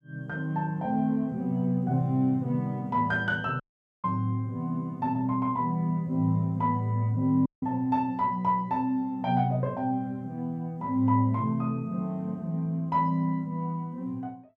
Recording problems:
audio cutting out; at 3.5 s and at 7.5 s

